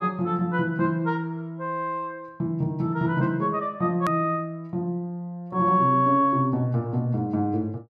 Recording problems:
click at an edit; at 4 s

